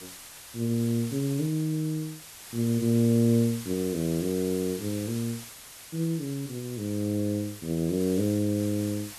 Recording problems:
background hiss; slope +1 dB per octave, SNR 14 dB

